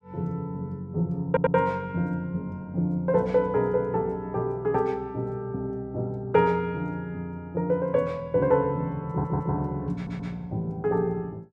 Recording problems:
audio stuttering; at 1.5 s, at 9 s and at 10 s

